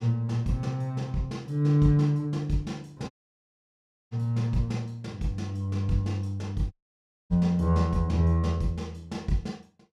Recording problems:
dropout; at 3 s for 1 s and at 6.5 s for 0.5 s

